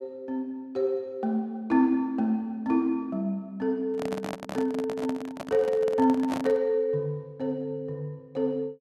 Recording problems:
microphone handling noise; from 4 to 6.5 s; peak -1 dB vs average level

